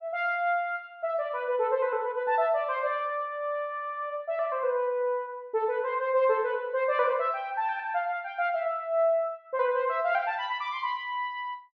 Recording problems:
none

